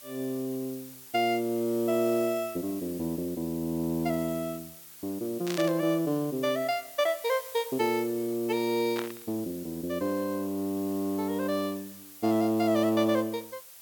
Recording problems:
hiss; slope +1 dB per octave, SNR 15 dB
static burst; at 5.5 s and at 9 s; peak -3 dB vs average level

